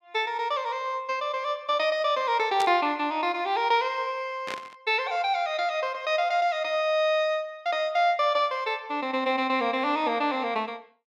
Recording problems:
static burst; at 2.5 s and at 4.5 s; peak -4 dB vs average level

